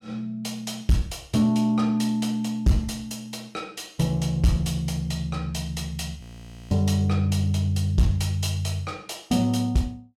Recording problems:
distortion; soft clipping, signal-to-distortion ratio 10 dB
audio freezing; at 6 s for 0.5 s

